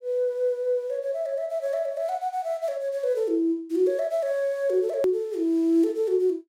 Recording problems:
click at an edit; at 5 s

